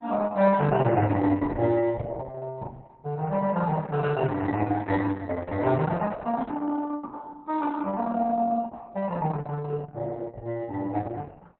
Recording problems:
codec artefacts; MP3, then Opus, log-spectral distance 3 dB, nothing above 4.1 kHz

